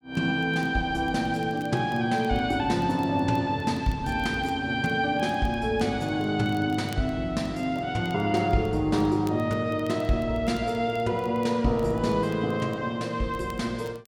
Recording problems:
crackling; vinyl, SNR 29 dB

